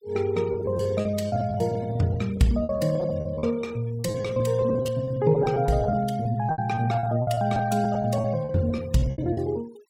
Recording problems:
noise reduction artefacts; signal-to-artefact ratio 24 dB
lost packets; 18% of the sound replaced, filled with repeated pitch periods

